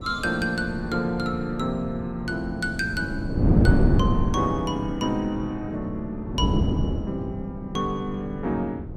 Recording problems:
wind on the microphone; below 260 Hz, SNR 0 dB

